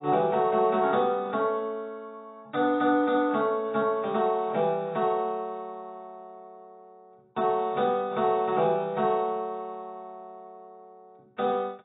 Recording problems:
lossy compression; AAC, log-spectral distance 2 dB, nothing above 3.2 kHz

